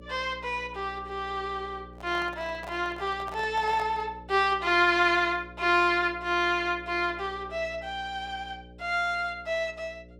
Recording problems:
hum; 60 Hz, harmonics up to 600 Hz, SNR 21 dB
microphone handling noise; from 2 to 4 s; peak -9 dB vs average level

